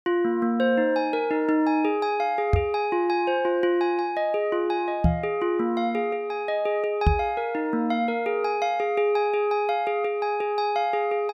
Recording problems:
knock on the microphone; at 2.5 s, at 5 s and at 7 s; peak +7 dB vs average level

